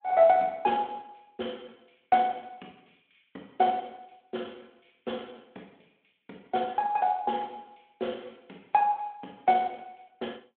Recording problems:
phone line; 220 Hz to 3.4 kHz, Speex

